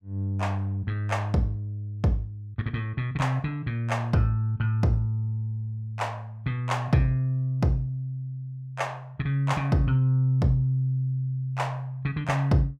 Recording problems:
none

